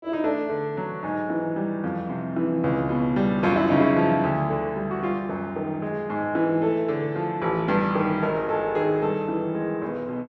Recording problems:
none

